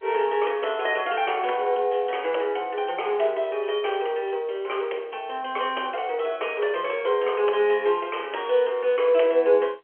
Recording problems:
phone line; 340 Hz to 3.3 kHz, G.711

